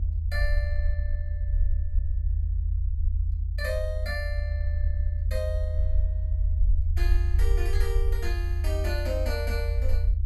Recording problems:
rumble; below 78 Hz, SNR -8 dB

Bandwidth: 15 kHz